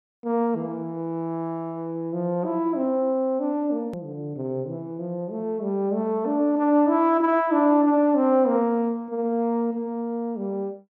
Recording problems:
edit click; at 4 s

